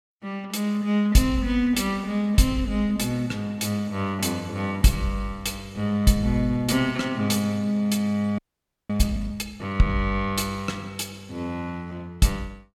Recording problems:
frozen audio; at 8.5 s for 0.5 s

